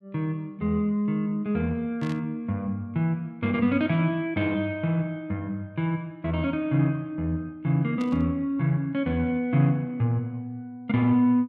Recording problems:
static burst; at 2 s and at 8 s; peak -13 dB vs average level

